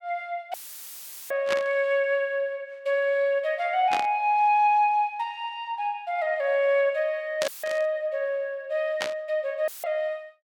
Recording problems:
audio cutting out; at 0.5 s for 1 s, at 7.5 s and at 9.5 s; filled with static
burst of static; 4 times, first at 1.5 s; peak 0 dB vs average level

